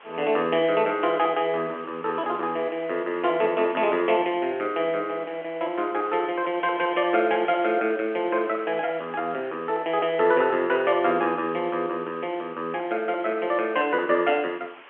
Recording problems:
telephone audio; 240 Hz to 3.2 kHz, G.711
background hiss; SNR 22 dB

